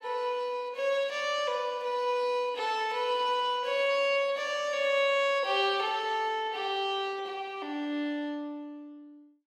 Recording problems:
none

